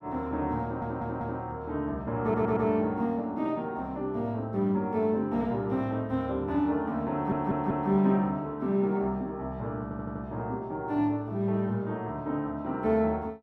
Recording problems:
stutter; 4 times, first at 0.5 s

